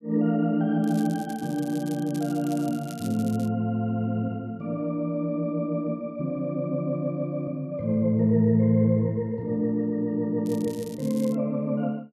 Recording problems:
crackling; from 1 to 3.5 s and at 10 s; loose cable, SNR 20 dB

